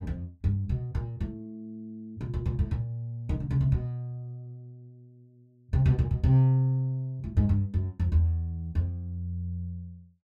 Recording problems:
none

